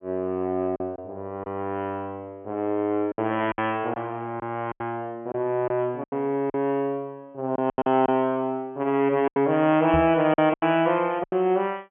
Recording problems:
treble cut off; nothing above 3.3 kHz
packet loss; 8% of the sound replaced, filled with silence
microphone bump; at 10 s; peak -2 dB vs average level

